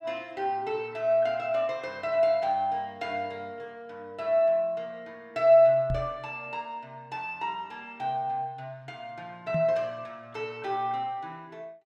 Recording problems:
microphone bump; at 6 s and at 9.5 s; peak -1 dB vs average level

